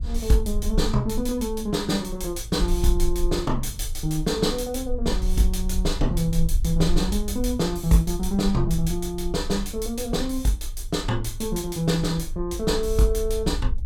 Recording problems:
low-frequency rumble; below 50 Hz, SNR 7 dB

